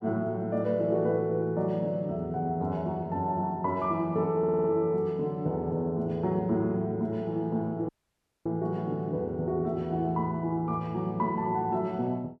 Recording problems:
stutter; at 4.5 s
dropout; at 8 s for 0.5 s

